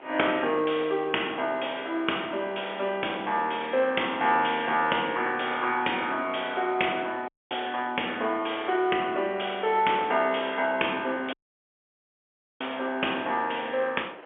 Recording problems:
telephone audio; 280 Hz to 3.4 kHz, G.711
wind noise; below 1.7 kHz, SNR 21 dB
audio cutting out; at 7.5 s and at 11 s for 1.5 s

